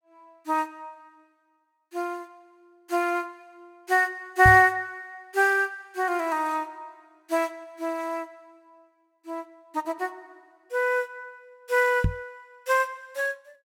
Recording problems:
microphone bump; at 4.5 s and at 12 s; peak +5 dB vs average level

